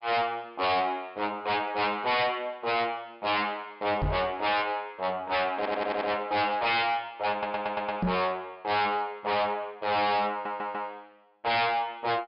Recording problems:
treble cut off; nothing above 5.5 kHz
distortion; hard clipping, signal-to-distortion ratio 7 dB
microphone bump; at 4 s and at 8 s; peak +3 dB vs average level
stutter; at 5.5 s, at 7.5 s and at 10 s

